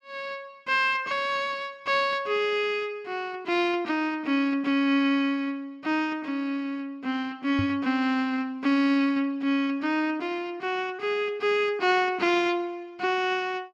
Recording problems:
microphone bump; at 7.5 s; peak -1 dB vs average level

